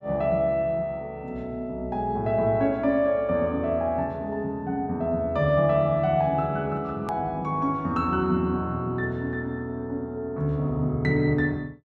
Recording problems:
edit click; at 7 s

